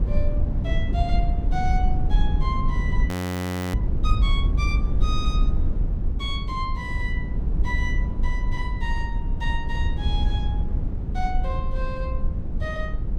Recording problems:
low-frequency rumble; below 72 Hz, SNR -7 dB
audio freezing; at 3 s for 0.5 s

